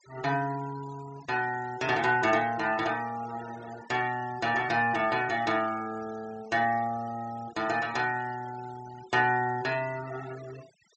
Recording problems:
low-pass filter; nothing above 8 kHz
denoising artefacts; signal-to-artefact ratio 20 dB

